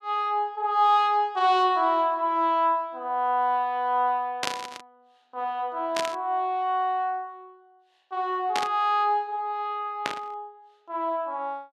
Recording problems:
burst of static; 4 times, first at 4.5 s; peak +2 dB vs average level

